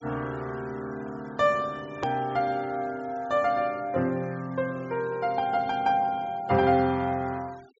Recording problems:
treble cut off; nothing above 8 kHz
noise reduction artefacts; signal-to-artefact ratio 25 dB
hard cut with a click; at 2 s

